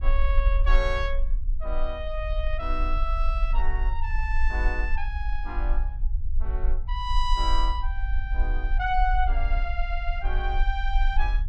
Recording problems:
low-frequency rumble; below 44 Hz, SNR -3 dB

